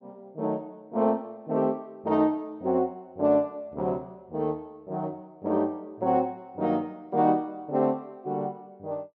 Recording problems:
none

